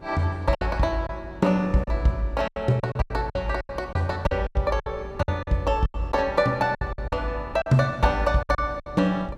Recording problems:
wind on the microphone; below 420 Hz, SNR 19 dB
packet loss; 13% of the sound replaced, filled with silence

